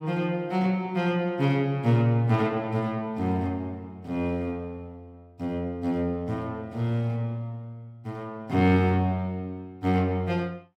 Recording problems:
none

